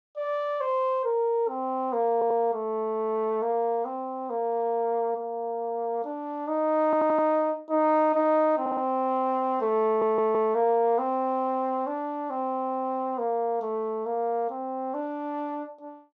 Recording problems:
audio stuttering; 4 times, first at 2 s

